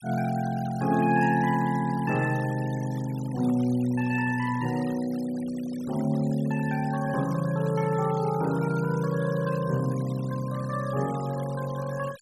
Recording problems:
denoising artefacts; signal-to-artefact ratio 18 dB

